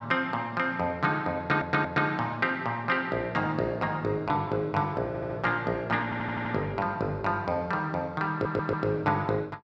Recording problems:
audio stuttering; 4 times, first at 1.5 s

